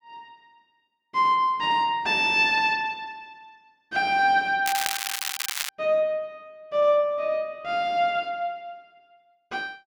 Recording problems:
crackle; from 4.5 to 5.5 s; loose cable, SNR 4 dB

